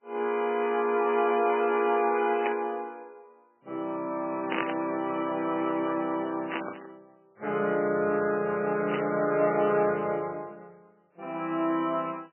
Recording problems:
lossy codec; MP3, log-spectral distance 3 dB, nothing above 2.4 kHz
burst of static; 4 times, first at 2.5 s; peak 0 dB vs average level

